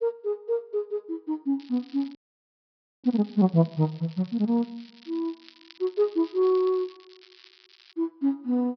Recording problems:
treble cut off; nothing above 5.5 kHz
crackling; from 1.5 to 8 s; loose cable, SNR 25 dB
frozen audio; at 2 s for 1 s

